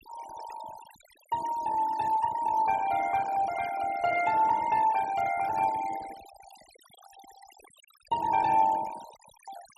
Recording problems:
noise reduction artefacts; signal-to-artefact ratio 19 dB

